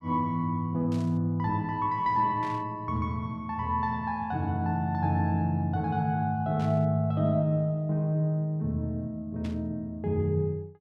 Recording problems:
burst of static; 4 times, first at 1 s; peak -14 dB vs average level

